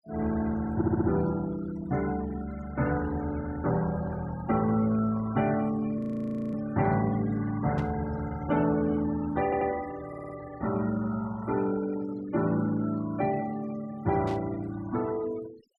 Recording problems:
denoising artefacts; signal-to-artefact ratio 18 dB
audio stuttering; at 1 s, at 9.5 s and at 10 s
frozen audio; at 6 s for 0.5 s
burst of static; at 8 s and at 14 s; peak -13 dB vs average level

